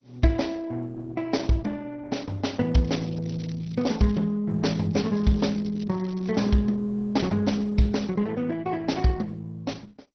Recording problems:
lossy compression; MP2, then Opus, log-spectral distance 4 dB, nothing above 5.8 kHz
crackle; from 3 to 4 s and from 5 to 6.5 s; loose cable, SNR 26 dB

